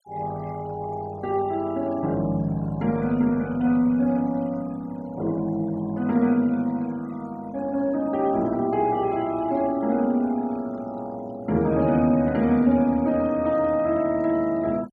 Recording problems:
denoising artefacts; signal-to-artefact ratio 24 dB

